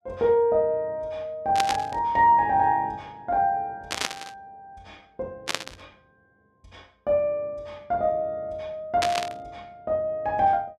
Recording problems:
burst of static; 4 times, first at 1.5 s; peak +3 dB vs average level

